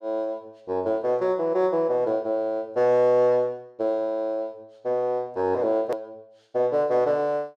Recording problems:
click at an edit; at 6 s

